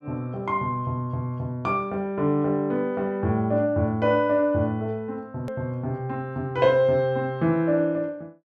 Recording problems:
edit click; at 5.5 s

